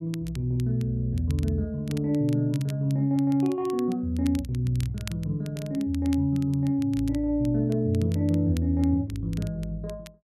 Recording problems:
crackle; vinyl, SNR 22 dB

